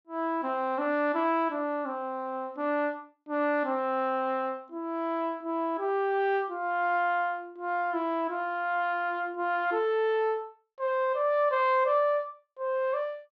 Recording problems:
treble missing; nothing above 8 kHz

